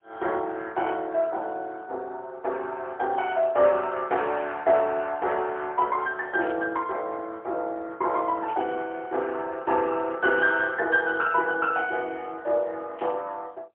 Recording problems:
phone line; 320 Hz to 3.6 kHz, AMR-NB, then MP3
static burst; at 6.5 s, at 8.5 s and at 13 s; peak -13 dB vs average level

